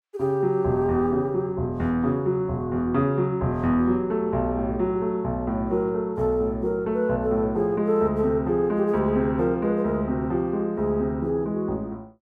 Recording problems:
none

